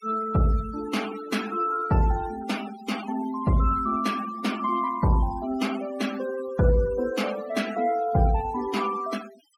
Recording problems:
denoising artefacts; signal-to-artefact ratio 15 dB

